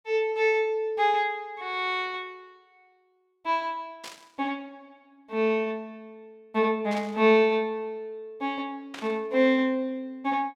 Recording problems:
static burst; at 4 s, at 7 s and at 9 s; peak -9 dB vs average level

